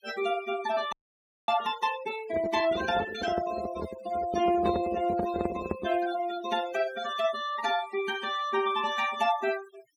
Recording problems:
noise reduction artefacts; signal-to-artefact ratio 12 dB
audio freezing; at 1 s for 0.5 s
handling noise; from 2.5 to 6 s; peak +3 dB vs average level

